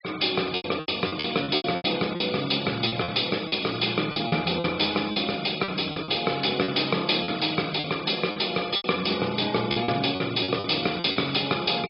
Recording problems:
treble missing; nothing above 5.5 kHz
noise reduction artefacts; signal-to-artefact ratio 17 dB
packet loss; 12% of the sound replaced, filled with repeated pitch periods

